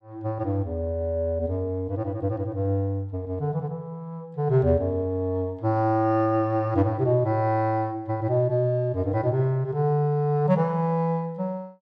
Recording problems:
none

